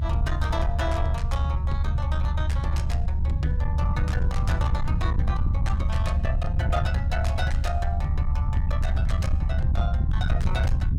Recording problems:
distorted audio; soft clipping, signal-to-distortion ratio 11 dB
rumble; below 92 Hz, SNR -7 dB

